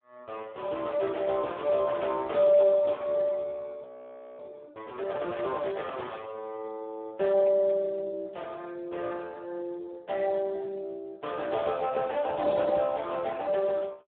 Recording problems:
telephone audio; 260 Hz to 3.8 kHz, Speex
frozen audio; at 4 s for 0.5 s

